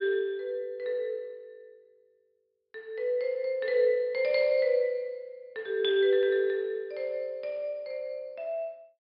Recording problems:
treble cut off; nothing above 5.5 kHz

